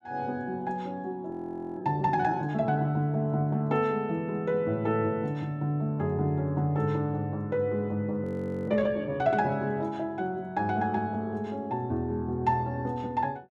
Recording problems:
frozen audio; at 1.5 s and at 8 s

